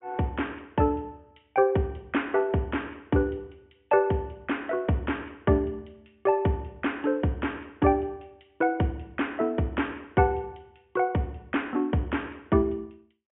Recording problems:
treble cut off; nothing above 3.2 kHz

